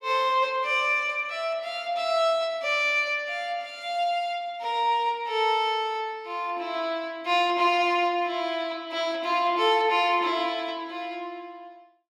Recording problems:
none

